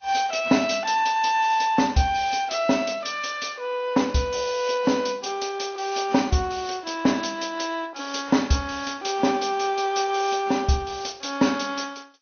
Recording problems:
lossy codec; Vorbis, then MP2, log-spectral distance 7 dB, nothing above 6.3 kHz

